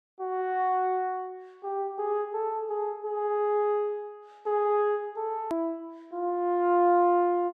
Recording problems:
click at an edit; at 5.5 s

